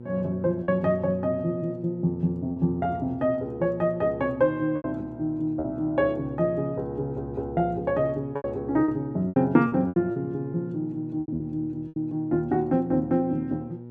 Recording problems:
electrical hum; 60 Hz, harmonics up to 840 Hz, SNR 15 dB
packet loss; 6% of the sound replaced, filled with repeated pitch periods

